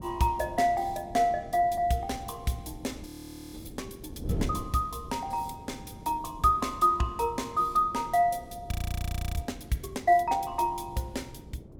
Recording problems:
wind on the microphone; below 280 Hz, SNR 15 dB
frozen audio; at 3 s and at 8.5 s for 0.5 s

